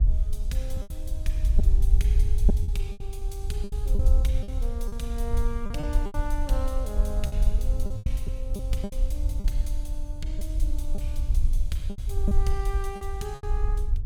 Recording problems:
hum; 60 Hz, harmonics up to 1.1 kHz, SNR 25 dB
wind noise; below 56 Hz, SNR -9 dB
packet loss; 9% of the sound replaced, filled with repeated pitch periods

